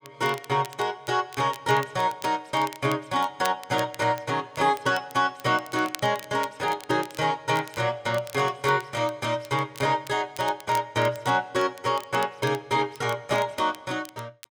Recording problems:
crackle; vinyl, SNR 18 dB

